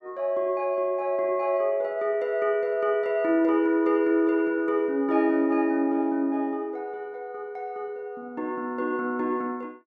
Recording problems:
none

